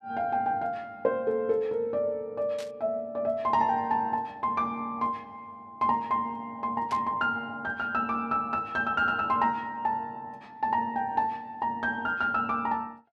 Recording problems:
burst of static; at 2.5 s and at 7 s; peak -9 dB vs average level

